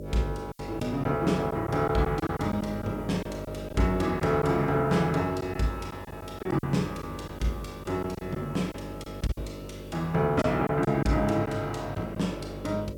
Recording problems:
mains hum; 50 Hz, harmonics up to 600 Hz, SNR 12 dB
background hiss; slope +6 dB per octave, SNR 29 dB
lost packets; 6% of the sound replaced, filled with silence

